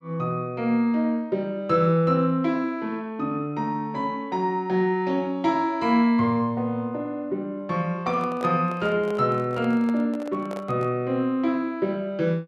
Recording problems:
handling noise; from 8 to 11 s; peak -7 dB vs average level

